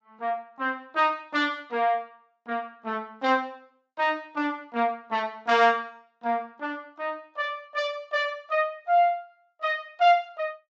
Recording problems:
treble cut off; nothing above 8 kHz

